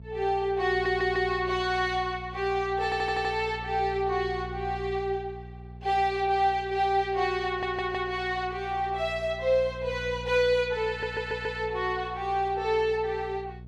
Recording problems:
hum; 60 Hz, harmonics up to 480 Hz, SNR 15 dB
stutter; 4 times, first at 0.5 s

